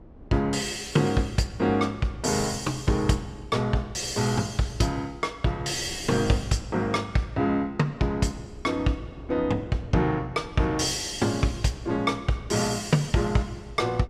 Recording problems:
wind noise; below 330 Hz, SNR 20 dB

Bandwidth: 14.5 kHz